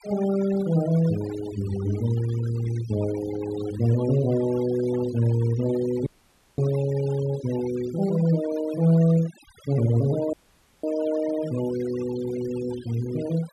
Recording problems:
denoising artefacts; signal-to-artefact ratio 16 dB
audio cutting out; at 6 s for 0.5 s and at 10 s for 0.5 s

